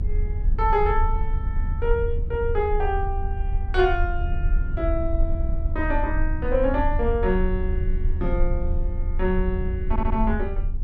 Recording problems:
rumble; below 66 Hz, strongest tone 26 Hz, SNR 1 dB
stutter; at 10 s

